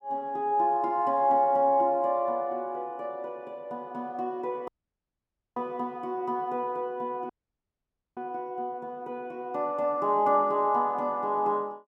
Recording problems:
dropout; at 4.5 s for 1 s and at 7.5 s for 1 s

